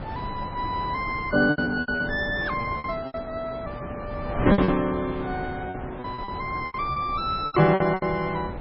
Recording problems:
lossy codec; MP3, log-spectral distance 3 dB, nothing above 4.5 kHz
wind on the microphone; below 620 Hz, SNR 9 dB
packet loss; 12% of the sound replaced, filled with repeated pitch periods

